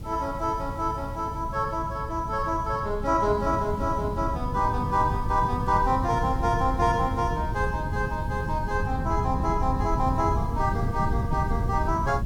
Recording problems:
hiss; SNR 25 dB
wind noise; below 150 Hz, SNR 4 dB

